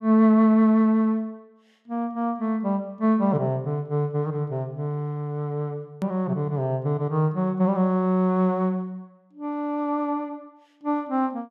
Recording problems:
edit click; at 6 s

